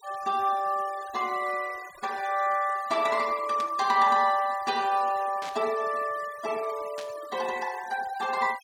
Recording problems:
denoising artefacts; signal-to-artefact ratio 19 dB
burst of static; at 3.5 s, at 5.5 s and at 7 s; peak -8 dB vs average level

